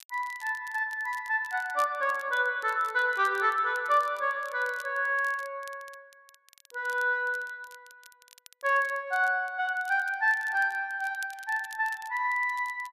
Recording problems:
crackle; vinyl, SNR 24 dB

